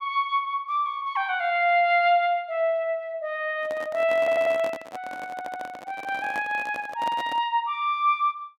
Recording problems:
handling noise; from 3.5 to 7.5 s; peak -7 dB vs average level
stutter; at 4 s and at 5.5 s

